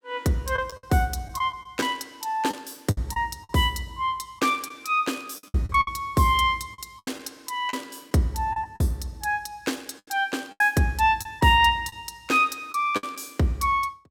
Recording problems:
packet loss; 8% of the sound replaced, filled with the last packet

